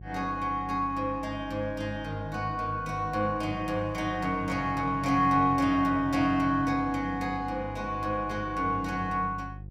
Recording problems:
hum; 50 Hz, harmonics up to 400 Hz, SNR 14 dB

